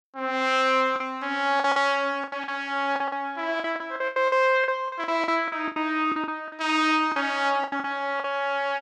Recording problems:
lost packets; 13% of the sound replaced, filled with the last packet

